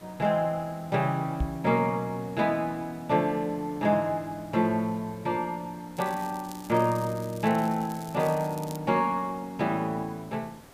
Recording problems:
background hiss; slope -5 dB per octave, SNR 22 dB
microphone thump; at 1.5 s; peak +2 dB vs average level
crackling; from 6 to 9 s; loose cable, SNR 19 dB

